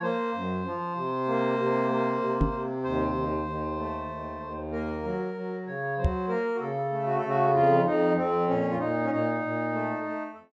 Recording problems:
knock on the microphone; at 2.5 s and at 6 s; peak +7 dB vs average level

